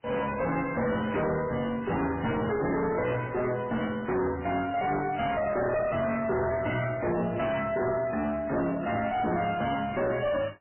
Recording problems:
codec artefacts; MP3, then MP3, log-spectral distance 5 dB, nothing above 3 kHz
distortion; soft clipping, signal-to-distortion ratio 5 dB

